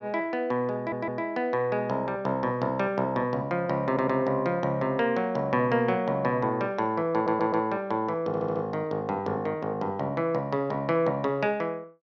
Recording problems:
stutter; 4 times, first at 1 s

